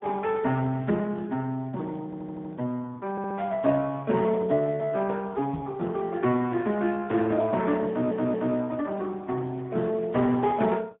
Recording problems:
treble cut off; nothing above 3.5 kHz
codec artefacts; Speex, log-spectral distance 3 dB
stutter; at 2 s, at 3 s and at 8 s
microphone thump; at 5.5 s; peak -4 dB vs average level

